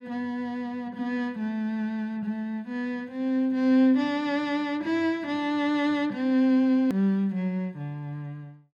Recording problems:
edit click; at 7 s

